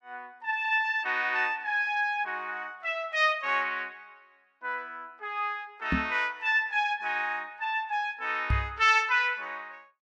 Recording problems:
microphone thump; at 6 s and at 8.5 s; peak +3 dB vs average level

